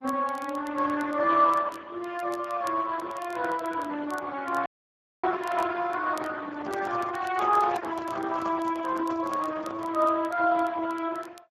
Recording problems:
lossy compression; Opus, then Speex, log-spectral distance 4 dB
crackling; vinyl, SNR 25 dB
dropout; at 4.5 s for 0.5 s
handling noise; from 6.5 to 10 s; peak -7 dB vs average level

